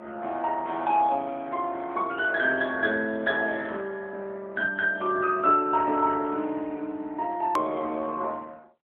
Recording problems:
phone line; 240 Hz to 3.8 kHz, AMR-NB
click at an edit; at 7.5 s

